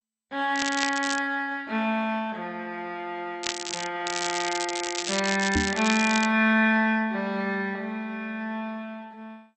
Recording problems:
codec artefacts; MP2, log-spectral distance 7 dB
crackling; at 0.5 s, at 3.5 s and from 4 to 6.5 s; loose cable, SNR 5 dB
knock on the microphone; at 5.5 s; peak +4 dB vs average level

